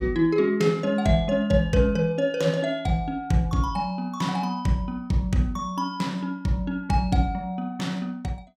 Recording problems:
none

